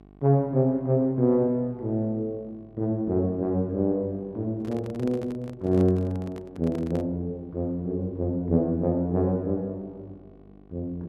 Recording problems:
electrical hum; 50 Hz, harmonics up to 1.2 kHz, SNR 26 dB
microphone handling noise; from 4.5 to 7 s; peak -8 dB vs average level

